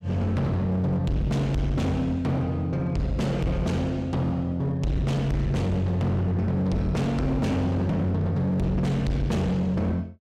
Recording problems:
distortion; hard clipping, signal-to-distortion ratio 7 dB

